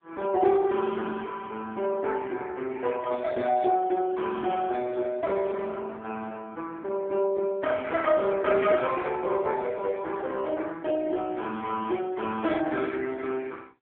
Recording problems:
telephone audio; 280 Hz to 3.1 kHz, AMR-NB

